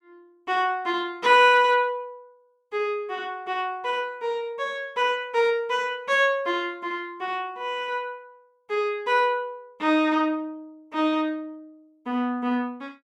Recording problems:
none

